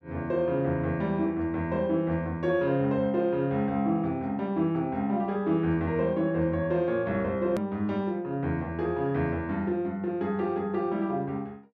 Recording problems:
edit click; at 7.5 s

